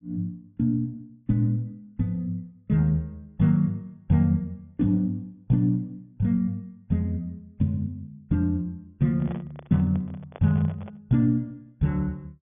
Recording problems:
treble missing; nothing above 3.5 kHz
microphone handling noise; from 9 to 11 s; peak -11 dB vs average level

